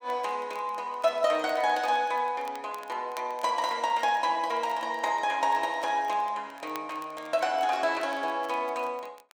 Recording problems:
crackling; vinyl, SNR 25 dB

